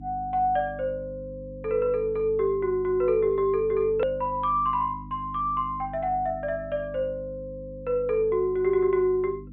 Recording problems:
treble missing; nothing above 4 kHz
electrical hum; 50 Hz, harmonics up to 300 Hz, SNR 16 dB
click at an edit; at 4 s

